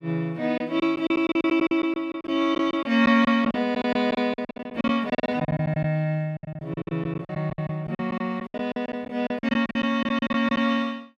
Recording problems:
lost packets; 17% of the sound replaced, filled with silence

